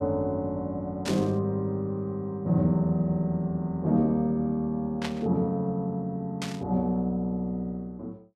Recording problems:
burst of static; at 1 s, at 5 s and at 6.5 s; peak -2 dB vs average level

